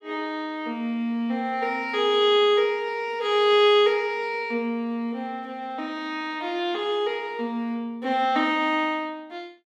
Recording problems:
none

